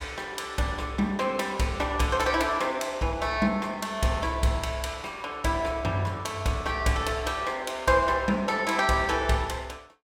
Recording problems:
none

